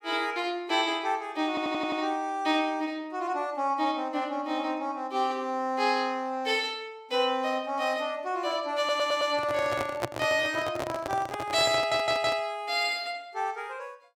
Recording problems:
stutter; at 1.5 s, at 9 s and at 12 s
handling noise; from 9 to 12 s; peak +3 dB vs average level

